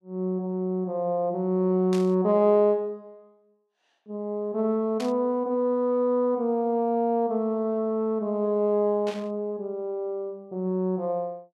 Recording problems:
burst of static; at 2 s, at 5 s and at 9 s; peak -9 dB vs average level

